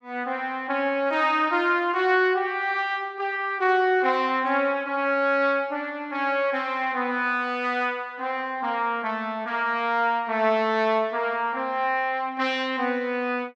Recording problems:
none

